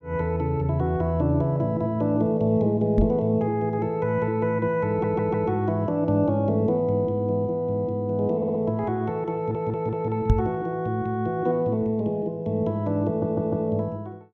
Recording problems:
microphone thump; at 3 s and at 10 s; peak +7 dB vs average level
audio stuttering; 4 times, first at 5 s

